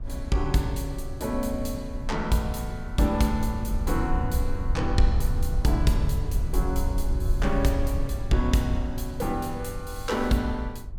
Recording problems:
low-frequency rumble; below 70 Hz, SNR 3 dB

